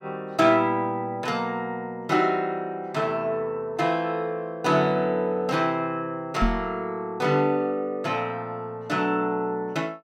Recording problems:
microphone thump; at 6.5 s; peak +5 dB vs average level

